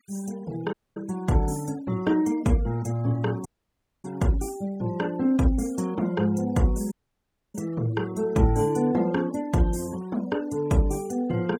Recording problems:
noise reduction artefacts; signal-to-artefact ratio 24 dB
dropout; at 0.5 s, at 3.5 s for 0.5 s and at 7 s for 0.5 s

